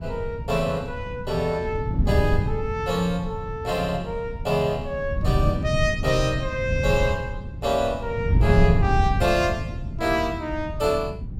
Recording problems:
wind on the microphone; below 150 Hz, SNR 3 dB

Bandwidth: 16.5 kHz